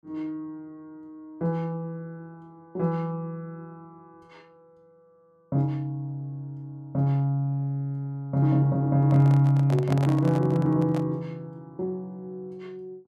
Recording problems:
handling noise; from 9 to 11 s; peak -4 dB vs average level

